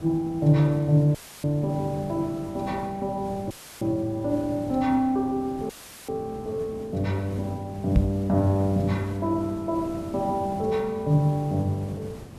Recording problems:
background hiss; slope -7 dB per octave, SNR 15 dB
audio cutting out; at 1 s, at 3.5 s and at 5.5 s; filled with static
knock on the microphone; at 8 s; peak +8 dB vs average level

